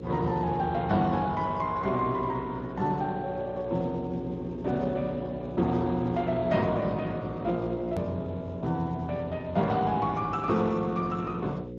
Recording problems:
lossy compression; MP2, then Speex, log-spectral distance 3 dB
hum; 60 Hz, harmonics up to 540 Hz, SNR 11 dB
hard cut with a click; at 8 s

